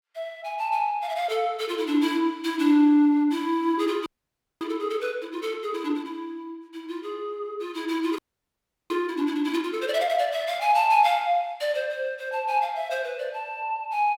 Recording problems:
frozen audio; at 4 s for 0.5 s and at 8 s for 0.5 s

